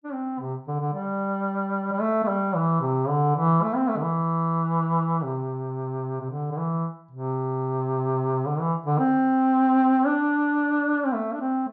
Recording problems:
none

